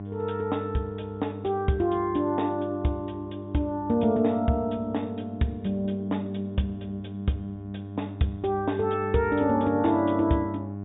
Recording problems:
treble missing; nothing above 4 kHz
electrical hum; 50 Hz, harmonics up to 1.1 kHz, SNR 10 dB

